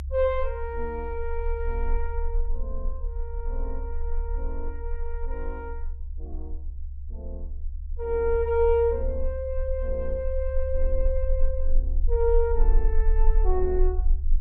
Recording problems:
rumble; below 38 Hz, strongest tone 18 Hz, SNR 2 dB

